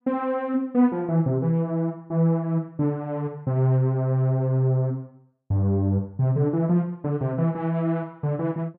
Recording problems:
none

